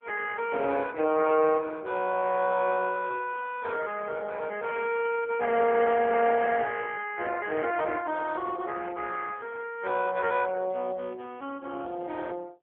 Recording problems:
telephone audio; 240 Hz to 2.9 kHz, AMR-NB

